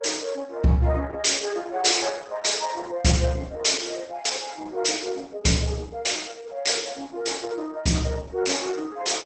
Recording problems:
lossy codec; Opus, log-spectral distance 6 dB, nothing above 8.2 kHz

